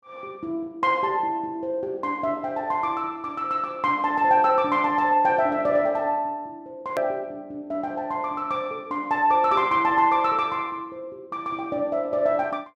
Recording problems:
edit click; at 7 s

